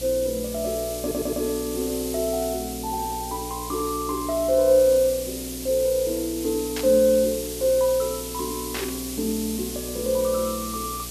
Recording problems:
mains hum; 60 Hz, harmonics up to 720 Hz, SNR 16 dB
hiss; SNR 9 dB
stutter; at 1 s
static burst; at 7 s and at 8.5 s; peak -3 dB vs average level

